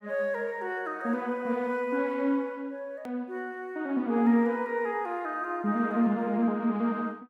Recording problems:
edit click; at 3 s

